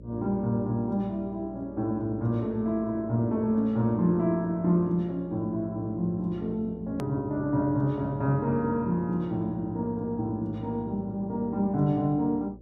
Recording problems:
hum; 60 Hz, harmonics up to 600 Hz, SNR 20 dB
click at an edit; at 7 s

